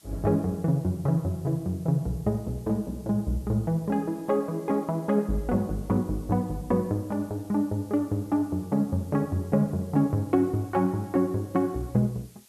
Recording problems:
hiss; slope +1 dB per octave, SNR 27 dB

